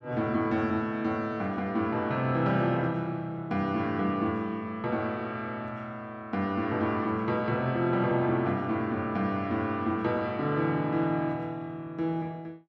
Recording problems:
none

